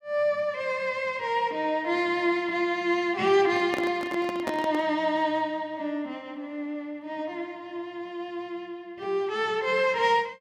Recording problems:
microphone handling noise; from 3.5 to 5 s; peak -1 dB vs average level

